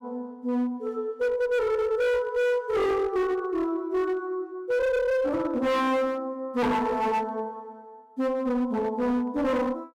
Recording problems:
distorted audio; hard clipping, uneven, signal-to-distortion ratio 7 dB

